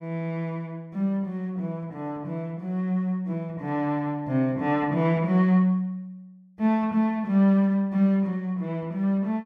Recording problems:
none

